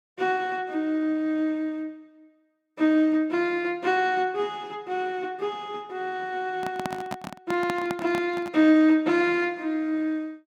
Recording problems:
microphone handling noise; from 6.5 to 8.5 s; peak -2 dB vs average level

